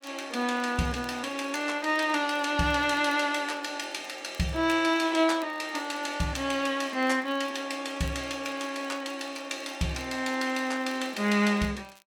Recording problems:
crackling; vinyl, SNR 27 dB

